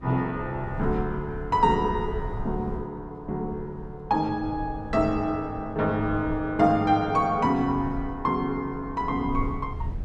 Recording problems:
wind noise; below 110 Hz, SNR 12 dB

